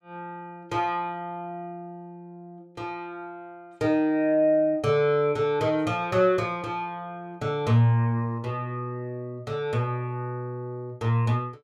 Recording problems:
none

